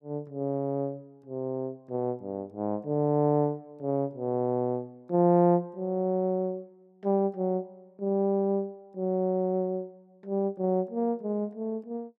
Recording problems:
none

